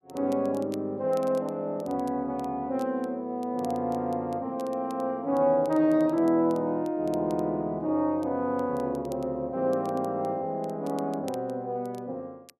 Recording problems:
crackle; vinyl, SNR 27 dB

